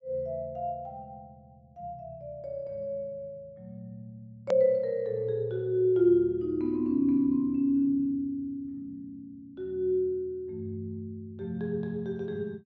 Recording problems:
treble missing; nothing above 8 kHz
hard cut with a click; at 4.5 s

